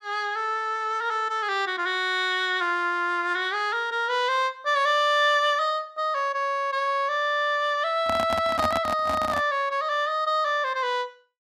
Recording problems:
handling noise; from 8 to 9.5 s; peak 0 dB vs average level

